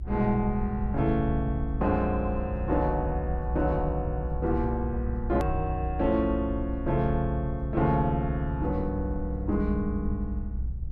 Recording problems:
rumble; below 66 Hz, strongest tone 62 Hz, SNR 5 dB
hard cut with a click; at 5.5 s

